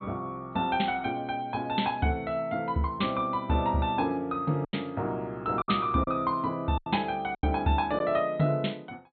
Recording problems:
treble cut off; nothing above 4.3 kHz
packet loss; 4% of the sound replaced, filled with silence

